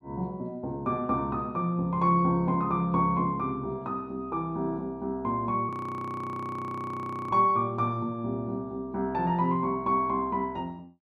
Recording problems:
frozen audio; at 5.5 s for 1.5 s

